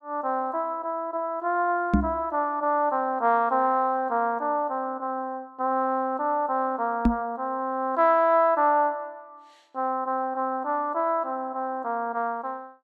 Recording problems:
microphone thump; at 2 s and at 7 s; peak +8 dB vs average level

